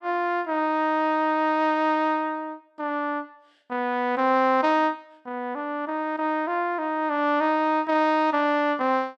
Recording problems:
none

